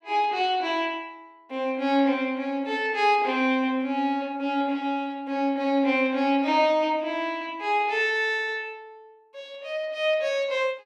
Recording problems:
none

